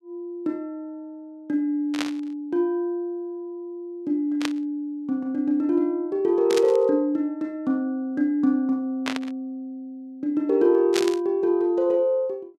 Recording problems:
burst of static; 5 times, first at 2 s; peak 0 dB vs average level

